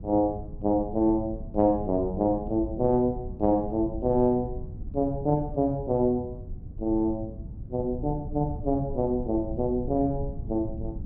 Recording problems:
low-frequency rumble; below 120 Hz, SNR 12 dB

